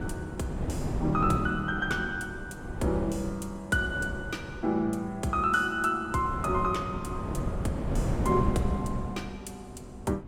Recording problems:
wind on the microphone; below 280 Hz, SNR 5 dB

